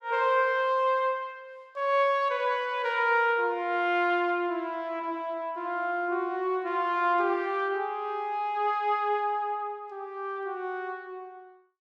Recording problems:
none

